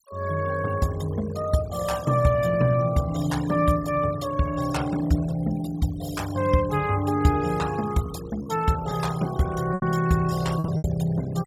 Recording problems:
noise reduction artefacts; signal-to-artefact ratio 16 dB
packet loss; 2% of the sound replaced, filled with repeated pitch periods

